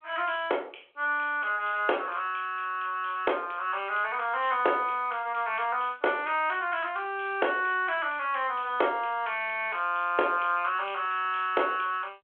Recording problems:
phone line; 340 Hz to 3.3 kHz, G.726

